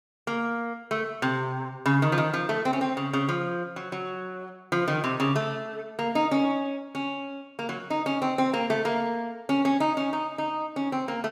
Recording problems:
none

